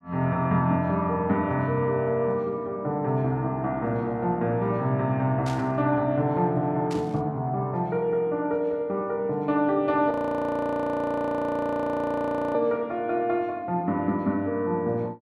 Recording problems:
static burst; at 5.5 s and at 7 s; peak -10 dB vs average level
frozen audio; at 10 s for 2.5 s

